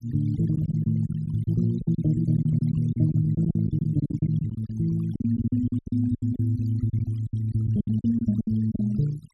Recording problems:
denoising artefacts; signal-to-artefact ratio 23 dB
packet loss; 14% of the sound replaced, filled with silence

